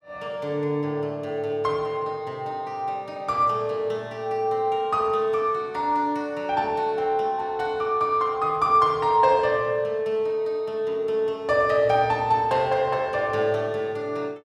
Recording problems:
none

